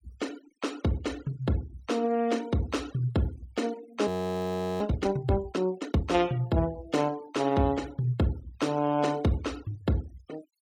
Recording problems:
denoising artefacts; signal-to-artefact ratio 20 dB
audio freezing; at 4 s for 0.5 s

